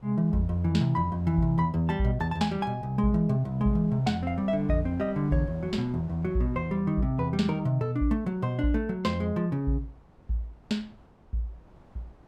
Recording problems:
wind on the microphone; below 500 Hz, SNR 24 dB

